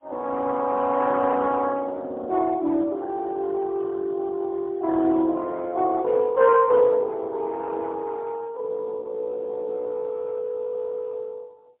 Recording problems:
telephone audio; 220 Hz to 2.8 kHz, AMR-NB, then MP3

